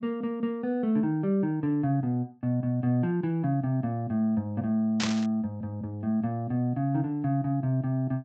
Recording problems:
treble cut off; nothing above 8 kHz
static burst; at 5 s; peak +2 dB vs average level

